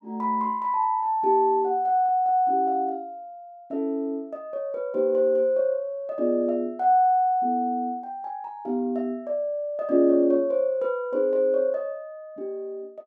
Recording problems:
none

